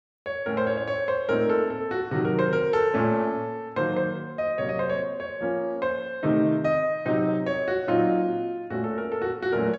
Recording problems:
low-pass filter; nothing above 8 kHz

